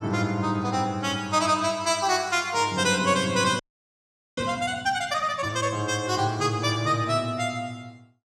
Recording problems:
frozen audio; at 3.5 s for 1 s

